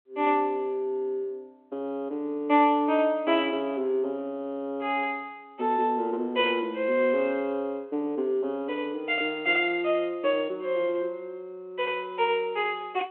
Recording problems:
telephone audio; 220 Hz to 3.3 kHz, G.726

